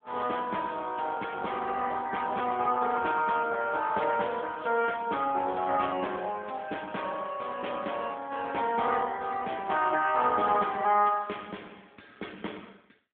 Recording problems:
telephone audio; 220 Hz to 3.4 kHz, AMR-NB

